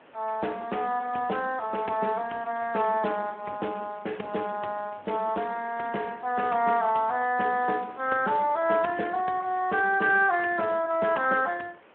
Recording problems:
telephone audio; 240 Hz to 2.7 kHz, Speex
hiss; SNR 27 dB

